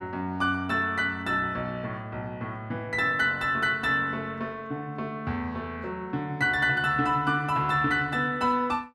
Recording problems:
none

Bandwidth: 13 kHz